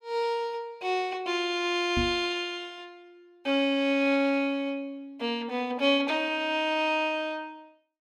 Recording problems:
knock on the microphone; at 2 s; peak +1 dB vs average level

